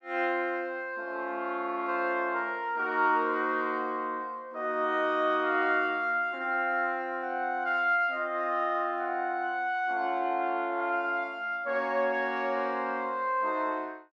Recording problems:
none

